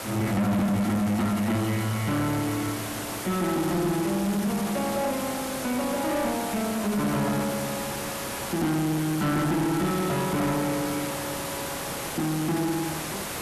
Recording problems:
distorted audio; soft clipping, signal-to-distortion ratio 8 dB
hiss; slope -4 dB per octave, SNR 6 dB

